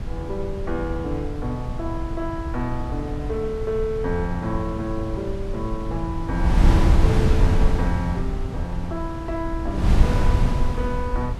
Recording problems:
wind on the microphone; below 100 Hz, SNR -3 dB

